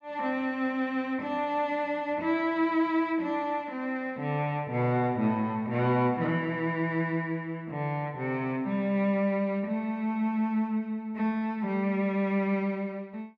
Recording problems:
none

